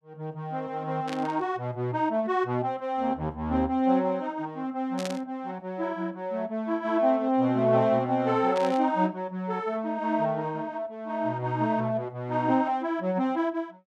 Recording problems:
static burst; at 1 s, at 5 s and at 8.5 s; peak -4 dB vs average level

